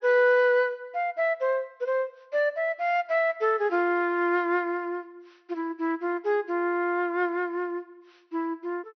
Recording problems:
treble cut off; nothing above 5.9 kHz

